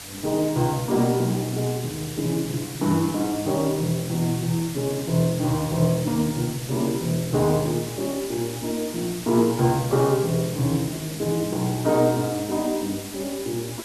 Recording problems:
background hiss; slope 0 dB per octave, SNR 12 dB

